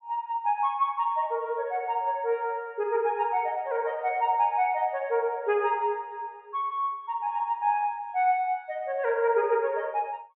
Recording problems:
treble cut off; nothing above 4 kHz

